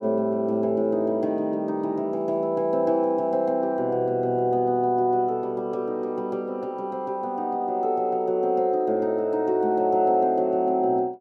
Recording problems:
none

